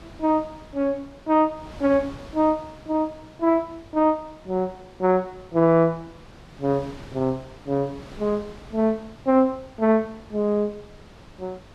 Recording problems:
wind on the microphone; below 1 kHz, SNR 21 dB

